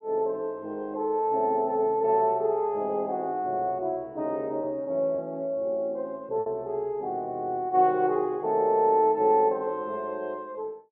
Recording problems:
lost packets; 0.9% of the sound replaced, filled with repeated pitch periods

